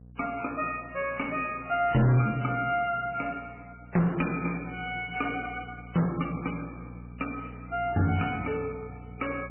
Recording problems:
lossy compression; MP3, log-spectral distance 5 dB, nothing above 2.5 kHz
distortion; soft clipping, signal-to-distortion ratio 10 dB
hum; 60 Hz, harmonics up to 720 Hz, SNR 18 dB

